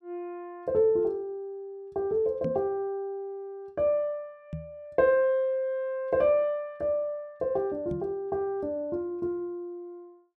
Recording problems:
knock on the microphone; at 2.5 s, at 4.5 s and at 8 s; peak -2 dB vs average level

